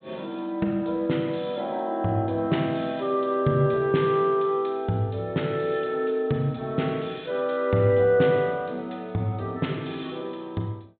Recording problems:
treble cut off; nothing above 4 kHz

